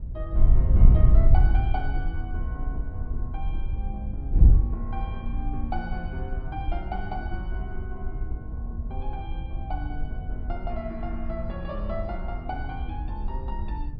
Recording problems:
treble missing; nothing above 5.5 kHz
wind on the microphone; below 68 Hz, SNR -10 dB

